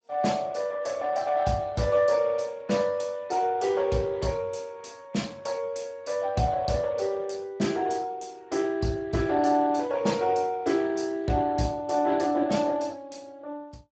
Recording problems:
lossy codec; Speex, log-spectral distance 4 dB, nothing above 7.6 kHz

